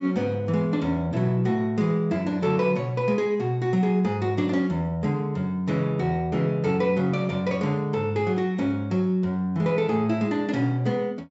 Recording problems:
treble cut off; nothing above 8 kHz

